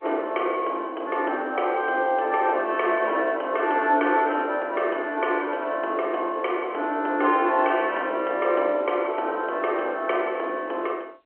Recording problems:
phone line; 260 Hz to 3.4 kHz, G.711

